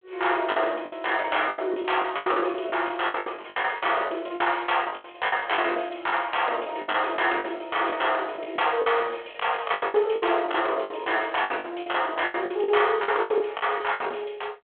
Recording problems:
phone line; 370 Hz to 3.4 kHz, G.726
packet loss; 17% of the sound replaced, filled with the last packet

